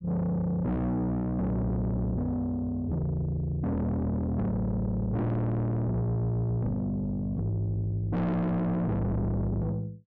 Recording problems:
distortion; soft clipping, signal-to-distortion ratio 6 dB

